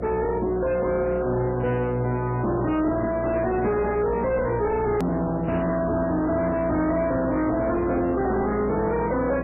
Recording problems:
codec artefacts; MP3, log-spectral distance 3 dB, nothing above 13.1 kHz
distortion; soft clipping, signal-to-distortion ratio 7 dB
hum; 60 Hz, harmonics up to 720 Hz, SNR 10 dB
hard cut with a click; at 5 s

